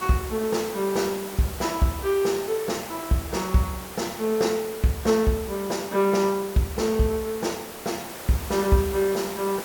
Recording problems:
background hiss; slope -4 dB per octave, SNR 11 dB

